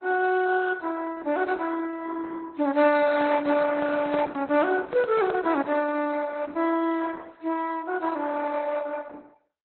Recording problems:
lossy codec; Opus, then AAC, log-spectral distance 4 dB, nothing above 4.1 kHz
handling noise; from 3 to 5.5 s; peak -2 dB vs average level

